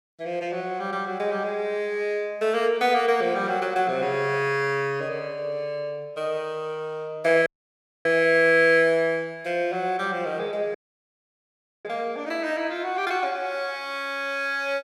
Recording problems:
audio cutting out; at 7.5 s for 0.5 s and at 11 s for 1 s

